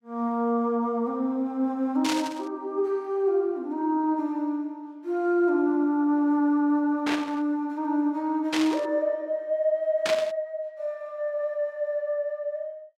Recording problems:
static burst; 4 times, first at 2 s; peak +2 dB vs average level

